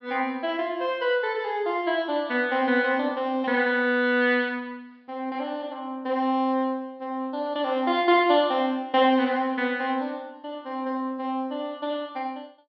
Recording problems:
low-pass filter; nothing above 5.5 kHz

